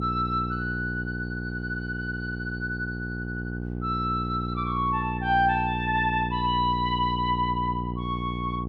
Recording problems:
hum; 60 Hz, harmonics up to 840 Hz, SNR 4 dB

